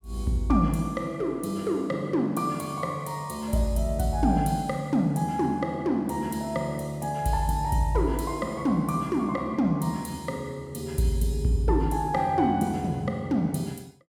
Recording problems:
none

